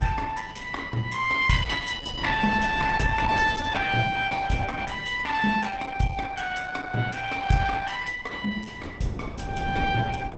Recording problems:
lossy codec; Opus, log-spectral distance 5 dB, nothing above 7.8 kHz
wind noise; below 330 Hz, SNR 13 dB

